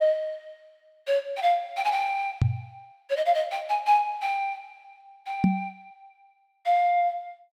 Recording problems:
microphone thump; at 2.5 s and at 5.5 s; peak +8 dB vs average level

